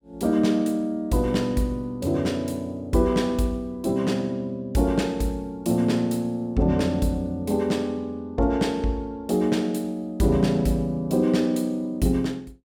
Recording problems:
none

